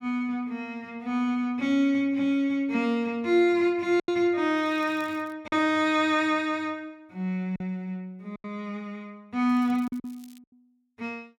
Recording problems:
packet loss; 3% of the sound replaced, filled with silence
crackle; at 4.5 s and at 9.5 s; loose cable, SNR 30 dB

